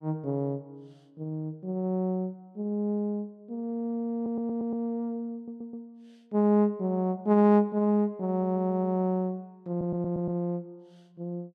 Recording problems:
audio stuttering; 4 times, first at 4 s

